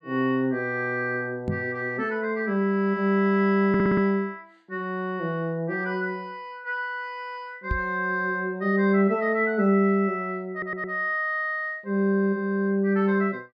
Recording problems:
microphone bump; at 1.5 s and at 7.5 s; peak +1 dB vs average level
stutter; at 3.5 s and at 11 s

